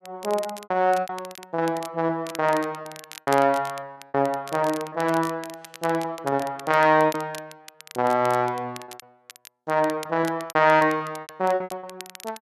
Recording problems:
crackle; vinyl, SNR 19 dB
lost packets; 14% of the sound replaced, filled with repeated pitch periods

